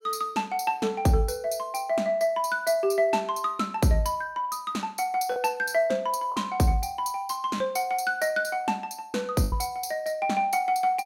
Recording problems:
lost packets; 1.6% of the sound replaced, filled with the last packet

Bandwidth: 16.5 kHz